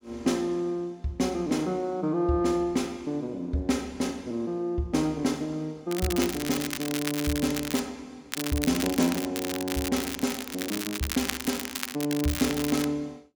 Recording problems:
crackle; from 6 to 8 s and from 8.5 to 13 s; loose cable, SNR 5 dB

